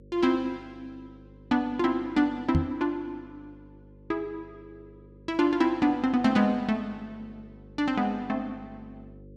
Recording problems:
hum; 50 Hz, harmonics up to 550 Hz, SNR 24 dB
knock on the microphone; at 2.5 s; peak +6 dB vs average level

